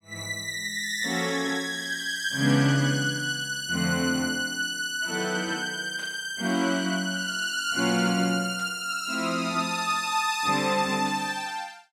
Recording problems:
burst of static; 4 times, first at 2.5 s; peak -15 dB vs average level

